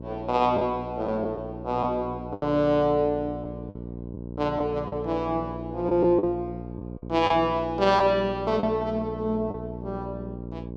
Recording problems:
electrical hum; 60 Hz, harmonics up to 960 Hz, SNR 11 dB
lost packets; 4% of the sound replaced, filled with the last packet

